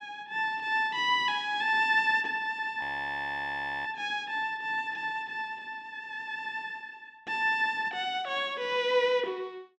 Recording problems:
frozen audio; at 3 s for 1 s

